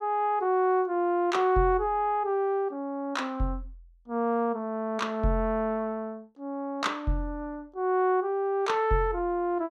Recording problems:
none

